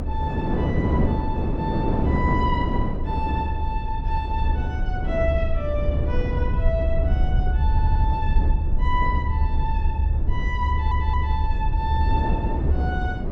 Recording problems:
rumble; below 72 Hz, SNR -4 dB
wind noise; below 360 Hz, SNR -1 dB
audio stuttering; at 7.5 s and at 11 s

